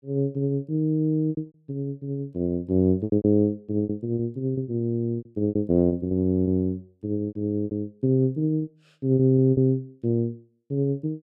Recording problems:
packet loss; 11% of the sound replaced, filled with repeated pitch periods

